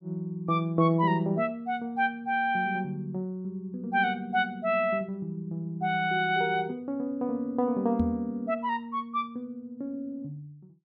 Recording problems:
microphone thump; at 8 s; peak +3 dB vs average level

